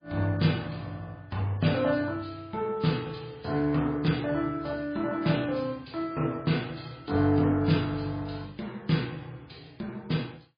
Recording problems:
lossy compression; MP3, log-spectral distance 4 dB

